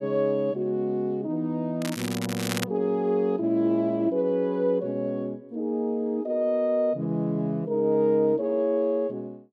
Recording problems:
crackling; at 2 s; loose cable, SNR 9 dB

